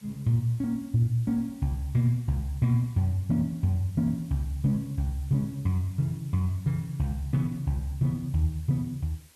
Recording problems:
hiss; slope -1 dB per octave, SNR 27 dB

